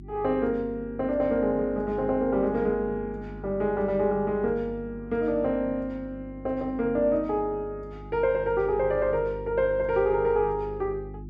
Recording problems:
hum; 50 Hz, harmonics up to 350 Hz, SNR 15 dB

